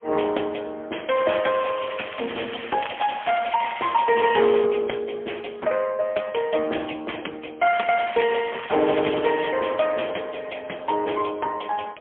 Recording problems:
phone line; 280 Hz to 3.3 kHz, AMR-NB, then MP3
crackle; from 1 to 4.5 s and from 7.5 to 9.5 s; loose cable, SNR 12 dB

